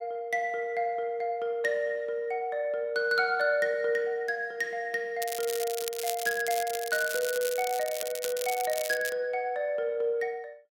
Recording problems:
crackle; from 5 to 9 s; loose cable, SNR 7 dB

